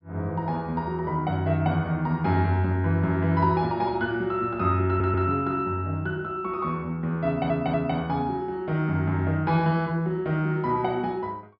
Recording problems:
low-pass filter; nothing above 5.5 kHz
stutter; at 5 s and at 7.5 s

